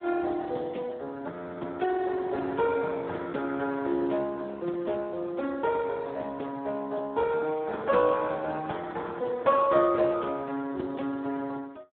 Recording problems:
phone line; 220 Hz to 3.8 kHz, Speex
frozen audio; at 1.5 s

